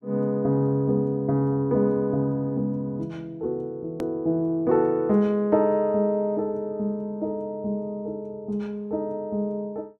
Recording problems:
edit click; at 4 s

